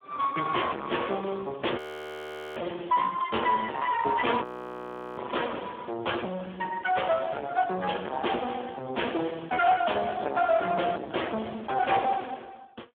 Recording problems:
phone line; 280 Hz to 2.9 kHz, Speex
distorted audio; soft clipping, signal-to-distortion ratio 7 dB
frozen audio; at 2 s for 1 s and at 4.5 s for 0.5 s

